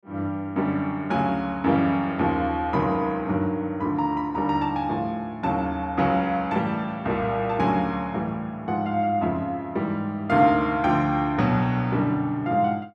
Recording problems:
none

